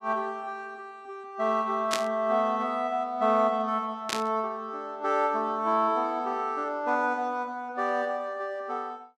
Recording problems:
burst of static; at 2 s and at 4 s; peak +4 dB vs average level

